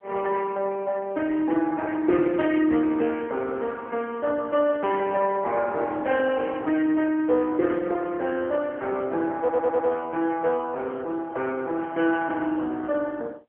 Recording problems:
telephone audio; 280 Hz to 3.5 kHz, AMR-NB
audio stuttering; at 9.5 s

